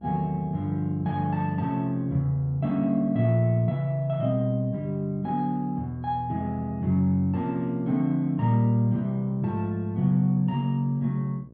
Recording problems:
hum; 60 Hz, harmonics up to 660 Hz, SNR 24 dB

